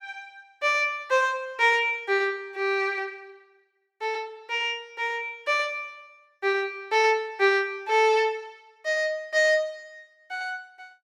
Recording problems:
none

